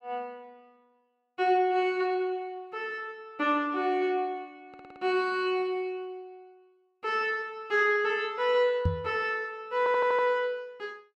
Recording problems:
stutter; at 4.5 s and at 10 s
knock on the microphone; at 9 s; peak +5 dB vs average level

